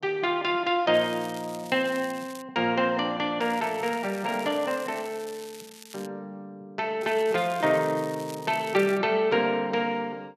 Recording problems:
crackling; from 1 to 2.5 s, from 3.5 to 6 s and from 7 to 9 s; loose cable, SNR 20 dB

